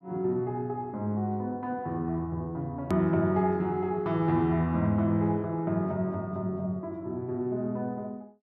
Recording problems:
edit click; at 3 s

